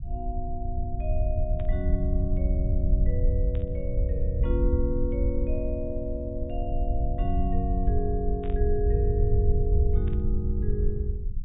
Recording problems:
low-pass filter; nothing above 4 kHz
low-frequency rumble; below 76 Hz, SNR -5 dB
burst of static; 4 times, first at 1.5 s; peak -13 dB vs average level

